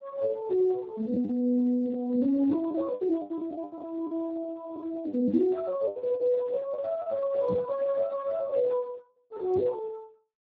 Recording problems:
lossy codec; Speex, then Speex, log-spectral distance 2 dB
lost packets; 10% of the sound replaced, filled with the last packet
microphone thump; at 7.5 s and at 9.5 s; peak -1 dB vs average level

